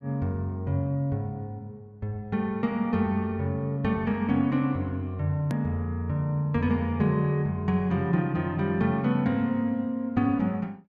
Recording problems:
edit click; at 5.5 s

